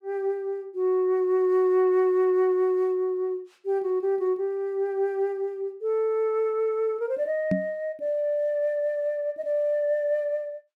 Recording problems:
microphone thump; at 7.5 s; peak +3 dB vs average level

